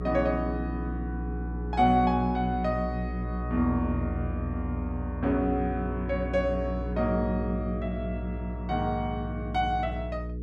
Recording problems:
hum; 60 Hz, harmonics up to 480 Hz, SNR 5 dB

